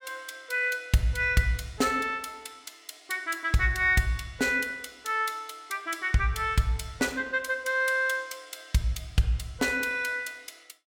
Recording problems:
none

